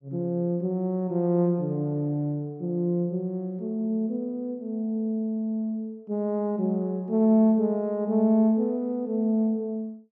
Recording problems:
none

